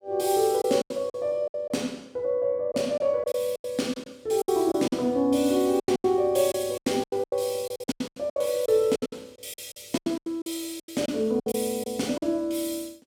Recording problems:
packet loss; 15% of the sound replaced, filled with silence

